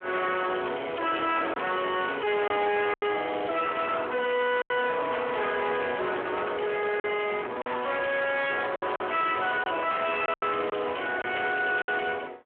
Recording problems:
telephone audio; 300 Hz to 3.3 kHz, Speex
distorted audio; soft clipping, signal-to-distortion ratio 7 dB
packet loss; 5% of the sound replaced, filled with silence

